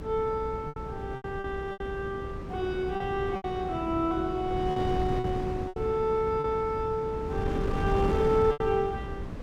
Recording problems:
electrical hum; 60 Hz, harmonics up to 660 Hz, SNR 16 dB
wind on the microphone; below 310 Hz, SNR 6 dB
lost packets; 7% of the sound replaced, filled with repeated pitch periods

